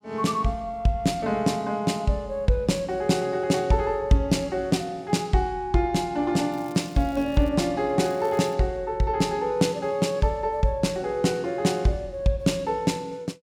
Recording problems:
crackle; at 6.5 s and at 8 s; loose cable, SNR 27 dB

